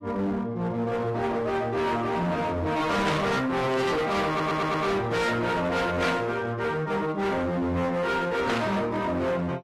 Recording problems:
codec artefacts; AAC, log-spectral distance 2 dB, nothing above 13.1 kHz
distorted audio; hard clipping, uneven, signal-to-distortion ratio 6 dB
burst of static; at 3 s, at 6 s and at 8.5 s; peak 0 dB vs average level
audio stuttering; at 4.5 s

